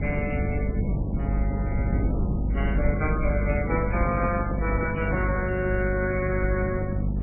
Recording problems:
lossy codec; MP3, then MP2, log-spectral distance 3 dB
hum; 50 Hz, harmonics up to 500 Hz, SNR 2 dB
rumble; below 140 Hz, strongest tone 52 Hz, SNR 0 dB
microphone handling noise; from 3.5 to 5.5 s; peak +3 dB vs average level

